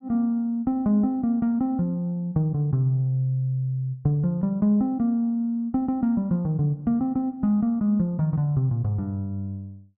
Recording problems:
none

